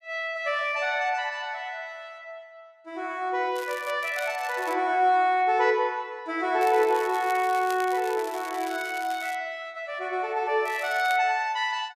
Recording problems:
crackling; 4 times, first at 3.5 s; loose cable, SNR 18 dB

